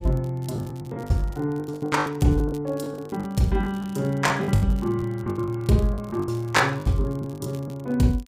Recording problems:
crackling; vinyl, SNR 27 dB
lost packets; 18% of the sound replaced, filled with the last packet

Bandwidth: 15.5 kHz